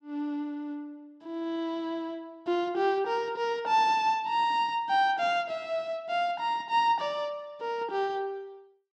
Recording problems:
none

